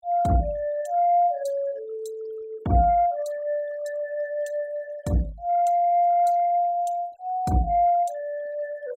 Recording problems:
noise reduction artefacts; signal-to-artefact ratio 25 dB

